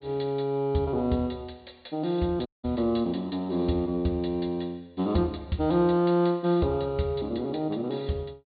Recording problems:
treble cut off; nothing above 4.5 kHz
audio cutting out; at 2.5 s

